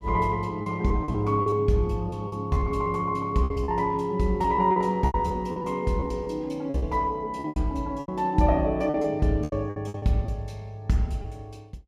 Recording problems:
packet loss; 12% of the sound replaced, filled with repeated pitch periods

